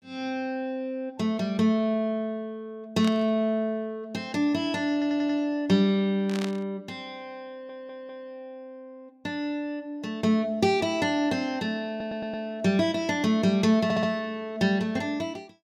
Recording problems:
static burst; at 3 s and at 6.5 s; peak -5 dB vs average level
stutter; 4 times, first at 5 s

